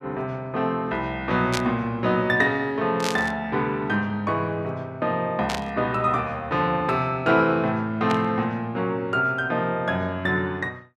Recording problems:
burst of static; 4 times, first at 1.5 s; peak 0 dB vs average level

